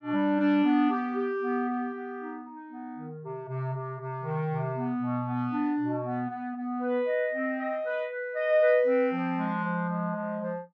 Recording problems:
none

